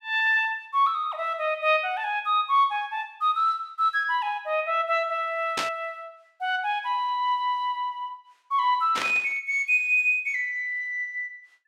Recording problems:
burst of static; at 5.5 s and at 9 s; peak 0 dB vs average level

